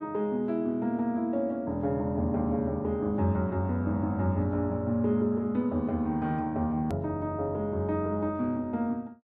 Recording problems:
click at an edit; at 7 s

